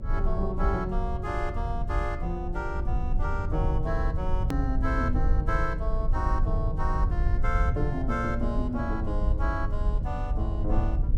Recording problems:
hum; 60 Hz, harmonics up to 600 Hz, SNR 15 dB
rumble; below 72 Hz, SNR -2 dB
click at an edit; at 4.5 s

